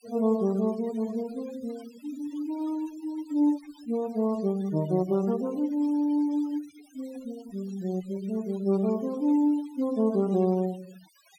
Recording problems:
noise reduction artefacts; signal-to-artefact ratio 22 dB

